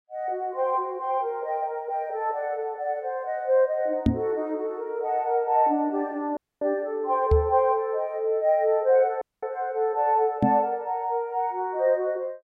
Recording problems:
knock on the microphone; at 4 s, at 7.5 s and at 10 s; peak +7 dB vs average level
dropout; at 6.5 s and at 9 s

